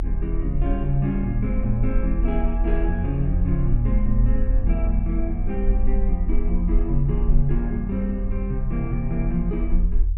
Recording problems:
low-frequency rumble; below 44 Hz, SNR -1 dB

